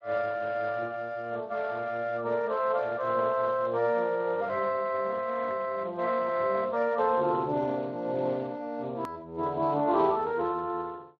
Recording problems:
codec artefacts; Speex, then Speex, log-spectral distance 3 dB
click at an edit; at 9 s

